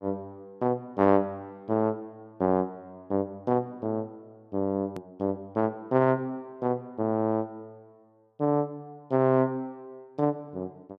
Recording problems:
click at an edit; at 5 s

